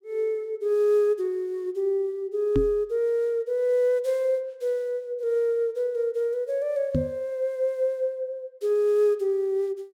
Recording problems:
knock on the microphone; at 2.5 s and at 7 s; peak +4 dB vs average level

